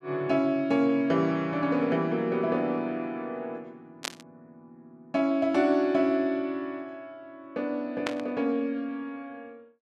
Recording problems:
static burst; at 4 s and at 8 s; peak 0 dB vs average level

